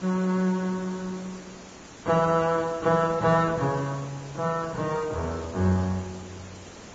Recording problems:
lossy compression; Vorbis, then Vorbis, log-spectral distance 9 dB
hiss; slope -4 dB per octave, SNR 18 dB

